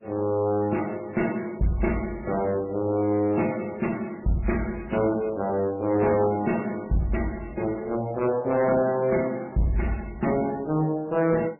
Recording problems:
codec artefacts; MP3, then MP3, log-spectral distance 4 dB, nothing above 2.7 kHz
distortion; hard clipping, uneven, signal-to-distortion ratio 11 dB

